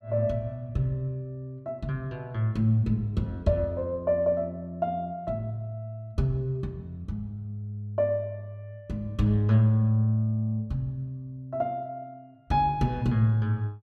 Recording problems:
none

